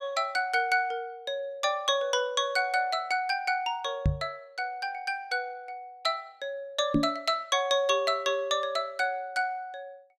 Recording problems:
microphone bump; at 4 s and at 7 s; peak +7 dB vs average level

